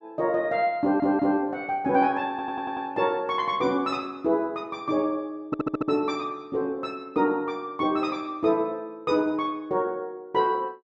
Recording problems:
audio stuttering; at 1 s, at 2.5 s and at 5.5 s

